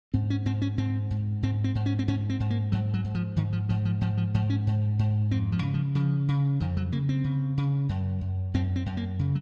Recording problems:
none

